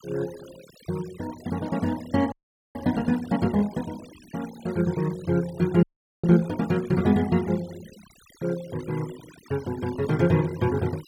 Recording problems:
noise reduction artefacts; signal-to-artefact ratio 20 dB
frozen audio; at 2.5 s and at 6 s

